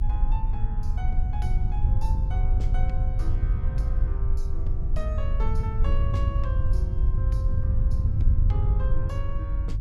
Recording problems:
hum; 50 Hz, harmonics up to 450 Hz, SNR 23 dB
low-frequency rumble; below 44 Hz, strongest tone 18 Hz, SNR -5 dB
wind noise; below 86 Hz, SNR -13 dB

